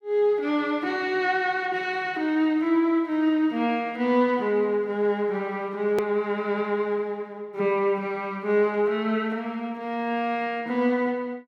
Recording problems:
click at an edit; at 6 s

